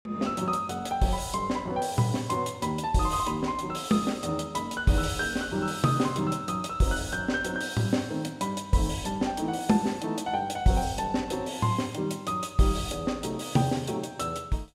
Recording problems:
none

